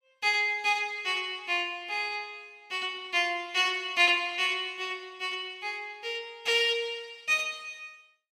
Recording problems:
none

